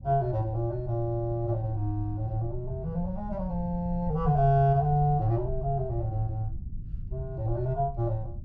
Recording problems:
rumble; below 90 Hz, SNR 11 dB

